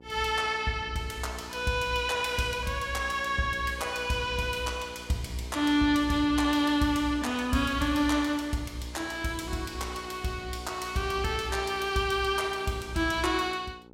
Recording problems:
hum; 60 Hz, harmonics up to 1 kHz, SNR 20 dB

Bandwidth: 16 kHz